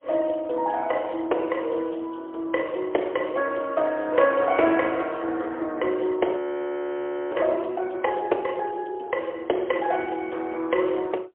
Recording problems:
telephone audio; 300 Hz to 3.3 kHz, AMR-NB, then MP3
frozen audio; at 6.5 s for 1 s

